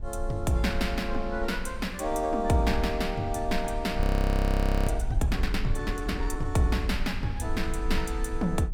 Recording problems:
low-frequency rumble; below 64 Hz, SNR 5 dB
frozen audio; at 4 s for 1 s

